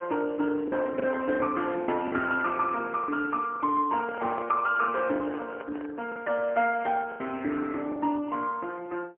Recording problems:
telephone audio; 240 Hz to 2.8 kHz, AMR-NB, then MP3
packet loss; 6% of the sound replaced, filled with the last packet
handling noise; from 4 to 6 s; peak -8 dB vs average level

